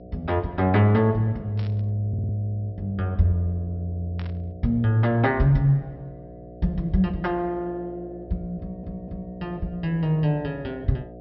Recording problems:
treble cut off; nothing above 5.6 kHz
hum; 60 Hz, harmonics up to 720 Hz, SNR 18 dB
static burst; at 1.5 s and at 4 s; peak -13 dB vs average level
stutter; at 2 s and at 8.5 s

